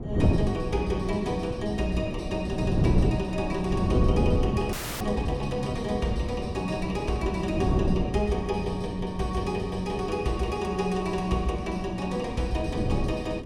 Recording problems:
hum; 60 Hz, harmonics up to 960 Hz, SNR 19 dB
wind noise; below 260 Hz, SNR 2 dB
frozen audio; at 4.5 s

